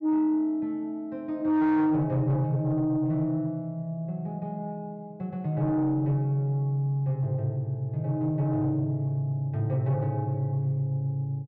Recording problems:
distorted audio; soft clipping, signal-to-distortion ratio 10 dB

